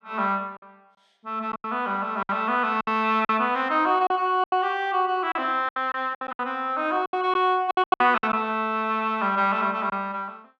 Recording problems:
lost packets; 10% of the sound replaced, filled with silence

